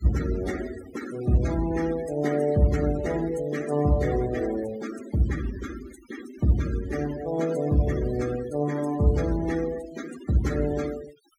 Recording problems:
noise reduction artefacts; signal-to-artefact ratio 15 dB

